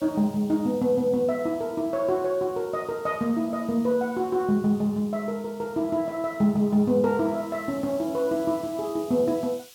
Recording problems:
hiss; SNR 25 dB

